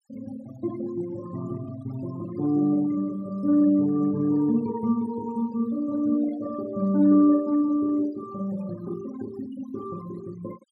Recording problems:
denoising artefacts; signal-to-artefact ratio 22 dB

